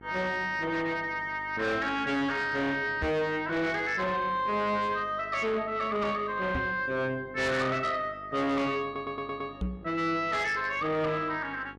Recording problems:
distortion; soft clipping, signal-to-distortion ratio 8 dB
mains hum; 50 Hz, harmonics up to 1.8 kHz, SNR 22 dB
knock on the microphone; at 3 s, at 6.5 s and at 9.5 s; peak 0 dB vs average level
stutter; at 9 s

